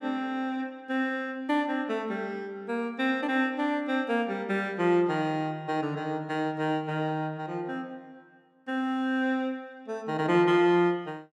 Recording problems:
none

